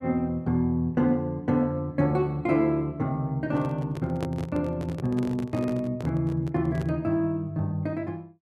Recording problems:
handling noise; from 3.5 to 7 s; peak -4 dB vs average level

